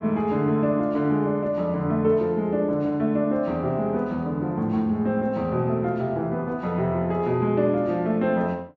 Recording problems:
none

